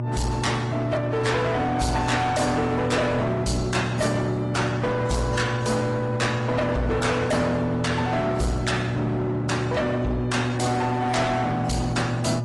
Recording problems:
codec artefacts; AAC, then AAC, log-spectral distance 4 dB, nothing above 11.3 kHz
distortion; hard clipping, signal-to-distortion ratio 8 dB
electrical hum; 60 Hz, harmonics up to 960 Hz, SNR 5 dB

